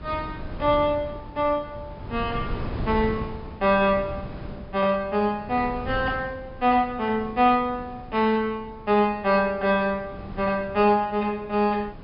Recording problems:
treble cut off; nothing above 5.5 kHz
wind noise; below 290 Hz, SNR 14 dB

